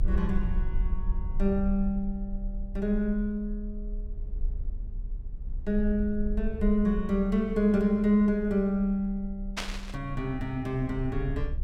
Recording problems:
rumble; below 48 Hz, SNR 8 dB
static burst; at 9.5 s; peak 0 dB vs average level

